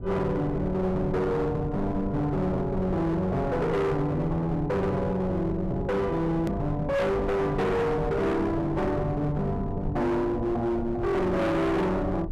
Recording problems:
distorted audio; hard clipping, signal-to-distortion ratio 7 dB
rumble; below 180 Hz, SNR 10 dB
edit click; at 6.5 s

